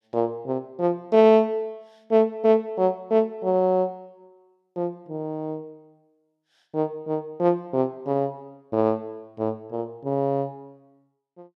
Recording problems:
none

